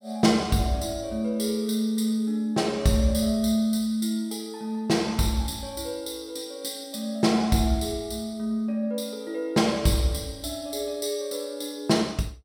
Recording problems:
none

